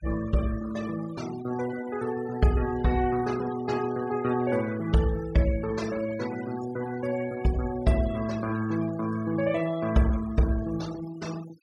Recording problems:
noise reduction artefacts; signal-to-artefact ratio 16 dB

